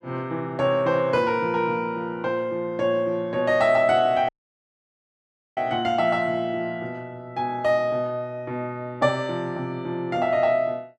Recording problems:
audio cutting out; at 4.5 s for 1.5 s

